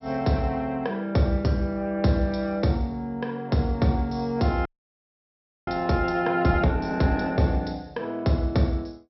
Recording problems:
treble cut off; nothing above 5.7 kHz
audio freezing; at 4.5 s for 1 s

